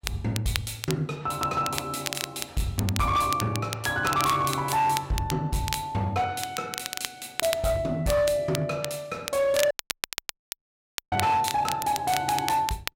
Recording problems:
distorted audio; hard clipping, signal-to-distortion ratio 12 dB
crackle; vinyl, SNR 8 dB
dropout; at 9.5 s for 1.5 s

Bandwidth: 16 kHz